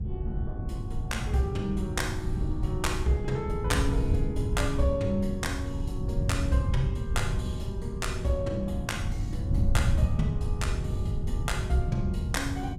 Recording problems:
wind noise; below 120 Hz, SNR 0 dB

